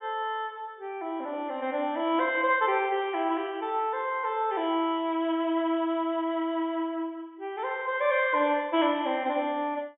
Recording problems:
treble cut off; nothing above 4 kHz

